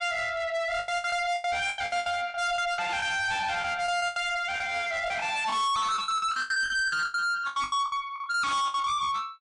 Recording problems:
codec artefacts; MP3, log-spectral distance 2 dB, nothing above 10.1 kHz
distortion; soft clipping, signal-to-distortion ratio 6 dB
lost packets; 17% of the sound replaced, filled with the last packet

